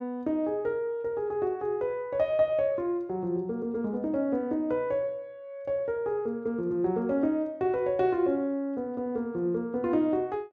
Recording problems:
none

